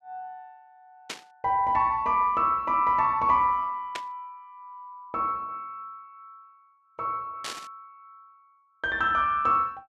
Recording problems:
burst of static; at 1 s, at 4 s and at 7.5 s; peak -4 dB vs average level

